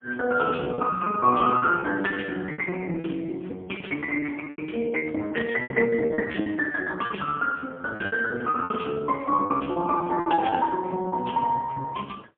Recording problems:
telephone audio; 190 Hz to 3.4 kHz, AMR-NB, then MP3
packet loss; 16% of the sound replaced, filled with repeated pitch periods

